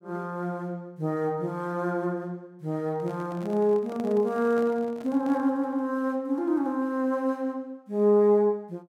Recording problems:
handling noise; from 3 to 5.5 s; peak -11 dB vs average level

